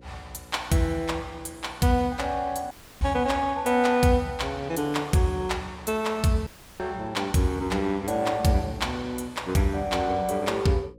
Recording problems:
hum; 60 Hz, harmonics up to 540 Hz, SNR 25 dB
dropout; at 2.5 s and at 6.5 s

